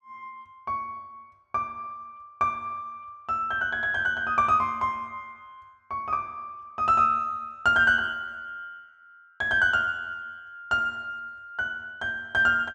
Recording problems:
none

